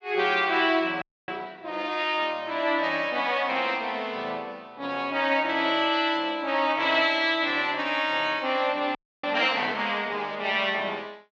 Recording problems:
audio freezing; at 1 s and at 9 s

